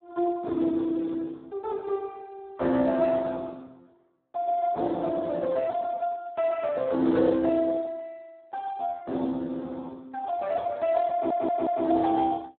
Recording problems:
telephone audio; 190 Hz to 2.1 kHz, Speex
stutter; at 11 s

